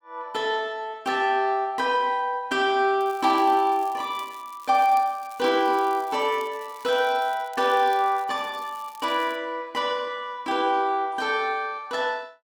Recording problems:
crackle; from 3 to 9.5 s; loose cable, SNR 25 dB

